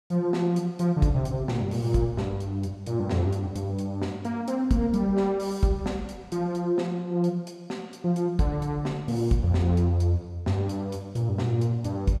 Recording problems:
none

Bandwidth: 15 kHz